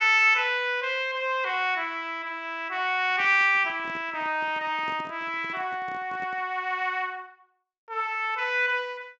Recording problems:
low-pass filter; nothing above 8 kHz
microphone handling noise; from 3 to 6.5 s; peak -12 dB vs average level

